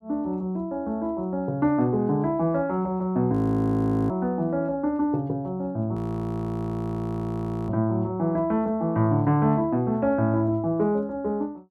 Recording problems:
audio freezing; at 3.5 s for 1 s and at 6 s for 1.5 s

